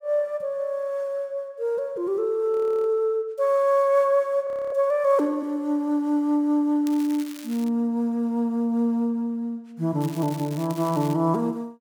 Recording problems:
frozen audio; at 2.5 s and at 4.5 s
crackling; at 7 s and from 10 to 11 s; loose cable, SNR 19 dB

